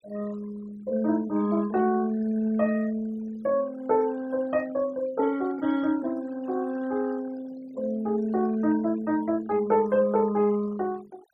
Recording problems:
denoising artefacts; signal-to-artefact ratio 22 dB

